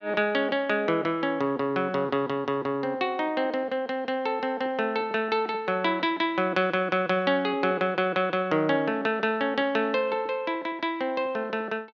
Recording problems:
none

